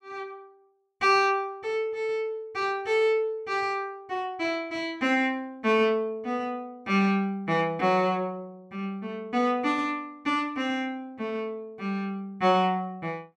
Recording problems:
none

